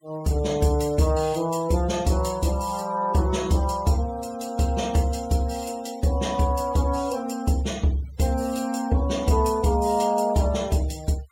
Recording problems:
denoising artefacts; signal-to-artefact ratio 22 dB

